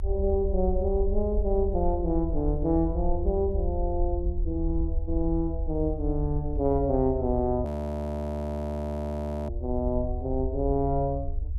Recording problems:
rumble; below 76 Hz, SNR 4 dB
audio freezing; at 7.5 s for 2 s

